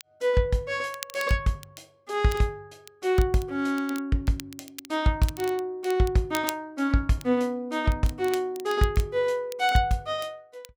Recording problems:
crackling; vinyl, SNR 17 dB

